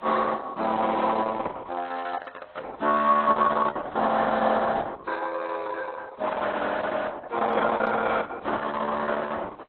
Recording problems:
lossy codec; Opus, then AAC, log-spectral distance 6 dB, nothing above 4 kHz

